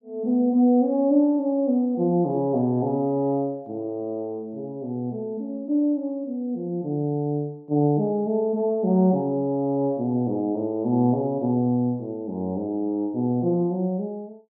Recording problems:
none

